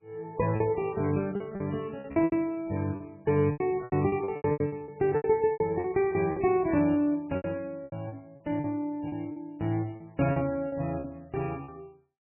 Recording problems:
lossy compression; MP3, log-spectral distance 2 dB, nothing above 2.6 kHz
lost packets; 14% of the sound replaced, filled with repeated pitch periods

